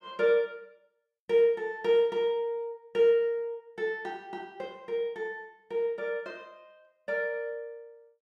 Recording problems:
none

